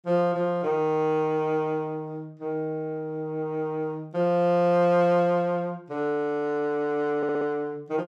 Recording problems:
stutter; at 7 s

